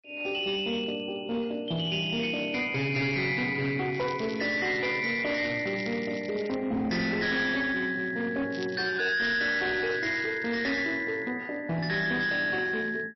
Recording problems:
lossy compression; MP3, log-spectral distance 5 dB, nothing above 5.7 kHz
distorted audio; hard clipping, signal-to-distortion ratio 11 dB
crackle; from 4 to 6.5 s and from 8.5 to 11 s; loose cable, SNR 19 dB

